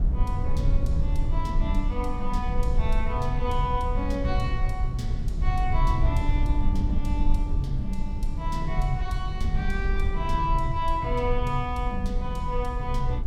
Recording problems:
background hiss; slope -7 dB per octave, SNR 29 dB
rumble; below 62 Hz, SNR -2 dB

